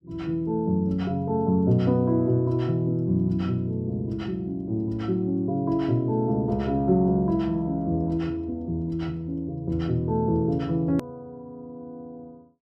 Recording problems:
hard cut with a click; at 11 s

